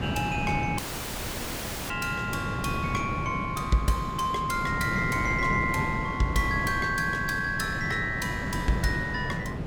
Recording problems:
wind on the microphone; below 370 Hz, SNR 5 dB
audio cutting out; at 1 s for 1 s

